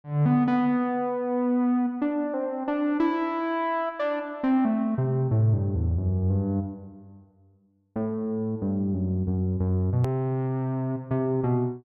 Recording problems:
hard cut with a click; at 10 s

